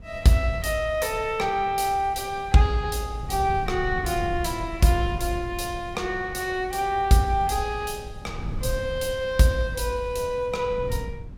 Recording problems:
wind noise; below 120 Hz, SNR 12 dB

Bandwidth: 16.5 kHz